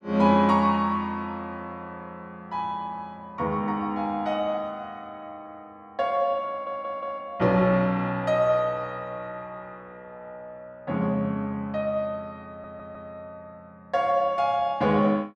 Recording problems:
stutter; at 6.5 s and at 12 s

